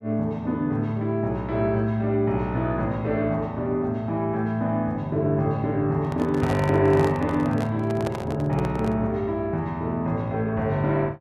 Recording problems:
microphone handling noise; from 6 to 9 s; peak -4 dB vs average level

